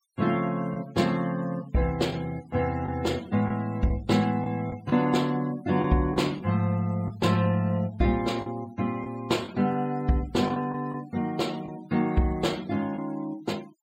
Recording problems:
denoising artefacts; signal-to-artefact ratio 22 dB
packet loss; 3% of the sound replaced, filled with the last packet

